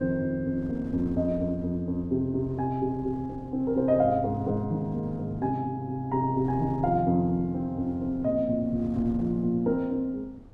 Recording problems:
wind noise; below 240 Hz, SNR 19 dB

